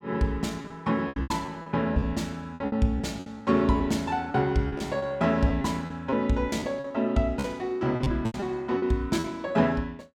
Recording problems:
lost packets; 12% of the sound replaced, filled with repeated pitch periods

